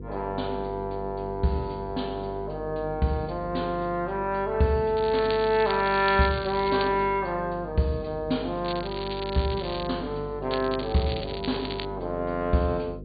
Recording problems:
low-pass filter; nothing above 4.6 kHz
hum; 50 Hz, harmonics up to 500 Hz, SNR 13 dB
crackling; from 5 to 7 s, from 8.5 to 10 s and from 11 to 12 s; loose cable, SNR 11 dB

